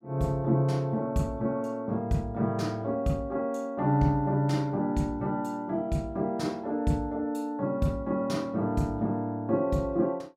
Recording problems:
none

